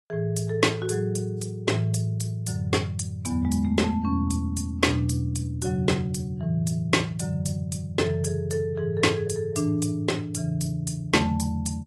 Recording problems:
codec artefacts; AAC, log-spectral distance 2 dB, nothing above 11.3 kHz

